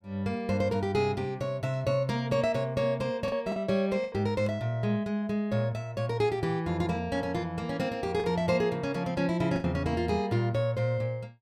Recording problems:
packet loss; 2% of the sound replaced, filled with the last packet

